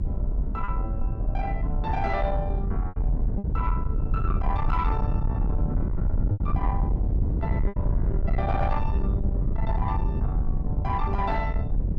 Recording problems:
distorted audio; soft clipping, signal-to-distortion ratio 10 dB
rumble; below 92 Hz, SNR -4 dB
lost packets; 3% of the sound replaced, filled with repeated pitch periods

